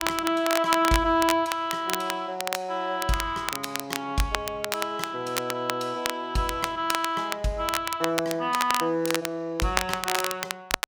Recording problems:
crackling; vinyl, SNR 5 dB

